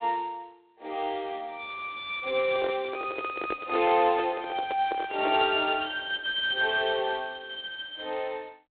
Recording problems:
telephone audio; 260 Hz to 3.7 kHz, G.726
handling noise; from 2.5 to 5.5 s; peak -2 dB vs average level

